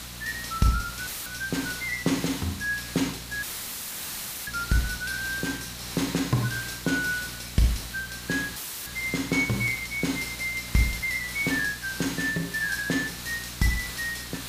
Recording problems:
mains hum; 60 Hz, harmonics up to 540 Hz, SNR 18 dB
hiss; slope 0 dB per octave, SNR 8 dB
dropout; at 1 s, at 3.5 s for 1 s and at 8.5 s; filled with static

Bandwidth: 15 kHz